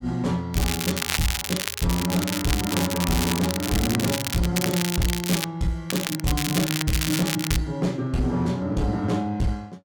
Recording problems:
distorted audio; hard clipping, uneven, signal-to-distortion ratio 12 dB
crackle; from 0.5 to 4.5 s, at 4.5 s and from 6 to 7.5 s; loose cable, SNR 2 dB

